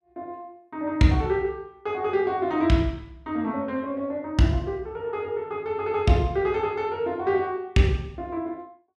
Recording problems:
none

